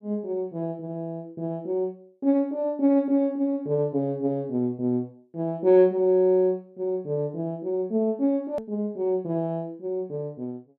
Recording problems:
click at an edit; at 8.5 s

